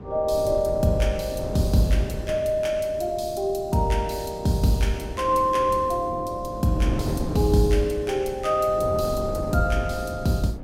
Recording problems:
wind noise; below 340 Hz, SNR 10 dB

